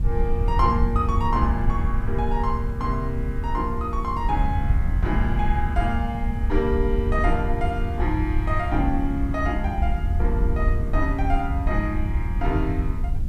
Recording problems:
hiss; slope -4 dB per octave, SNR 27 dB
wind noise; below 78 Hz, SNR -1 dB

